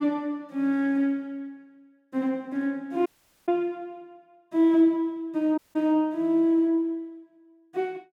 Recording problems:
dropout; at 3 s and at 5.5 s

